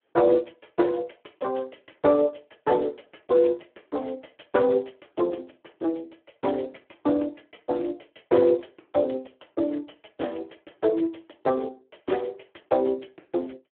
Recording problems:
telephone audio; 280 Hz to 3.3 kHz, Speex

